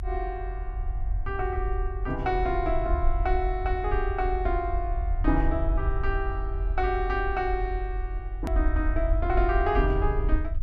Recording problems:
low-frequency rumble; below 58 Hz, SNR 1 dB
click at an edit; at 8.5 s

